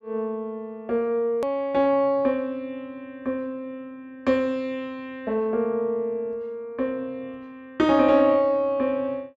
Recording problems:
edit click; at 1.5 s

